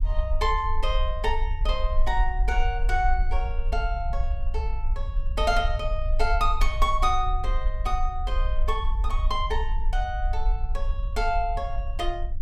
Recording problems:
rumble; below 48 Hz, SNR 0 dB

